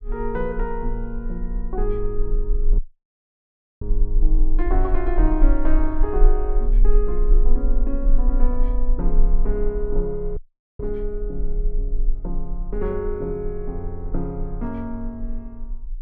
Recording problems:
low-frequency rumble; below 34 Hz, strongest tone 20 Hz, SNR -3 dB
audio cutting out; at 3 s for 1 s and at 10 s

